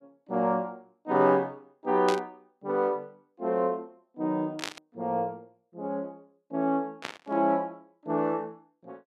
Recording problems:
static burst; at 2 s, at 4.5 s and at 7 s; peak +1 dB vs average level

